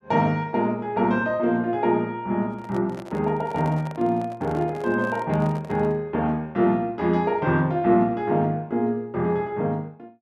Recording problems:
handling noise; from 2.5 to 6 s; peak -10 dB vs average level

